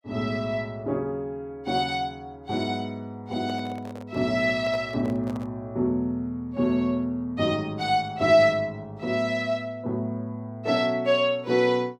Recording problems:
microphone handling noise; from 3.5 to 5.5 s; peak -10 dB vs average level

